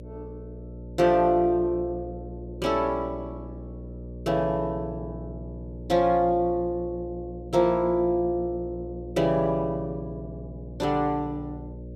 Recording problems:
hum; 60 Hz, harmonics up to 600 Hz, SNR 14 dB

